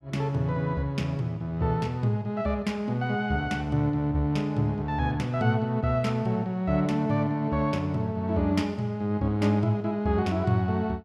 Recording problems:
none

